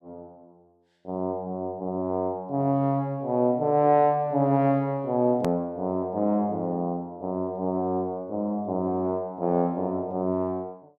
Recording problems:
click at an edit; at 5.5 s

